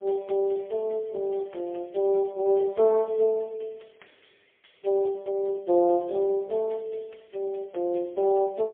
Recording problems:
telephone audio; 260 Hz to 3.4 kHz, AMR-NB, then MP3

